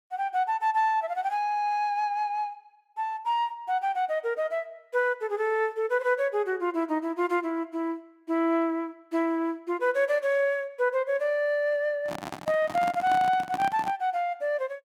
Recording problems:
microphone handling noise; from 12 to 14 s; peak -5 dB vs average level

